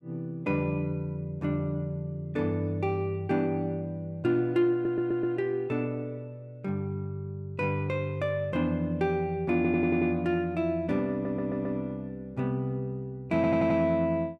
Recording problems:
audio stuttering; 4 times, first at 4.5 s

